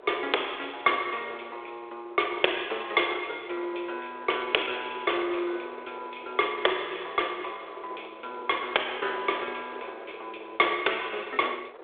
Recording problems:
phone line; 320 Hz to 3.9 kHz, G.726
distorted audio; hard clipping, signal-to-distortion ratio 23 dB
wind noise; below 850 Hz, SNR 18 dB

